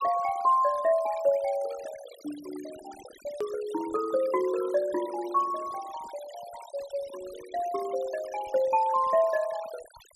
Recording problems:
noise reduction artefacts; signal-to-artefact ratio 19 dB
click at an edit; at 3.5 s

